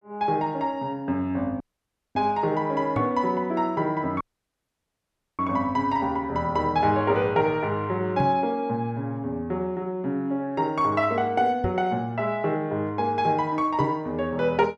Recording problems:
audio cutting out; at 1.5 s for 0.5 s and at 4 s for 1 s
microphone thump; 4 times, first at 3 s; peak +1 dB vs average level

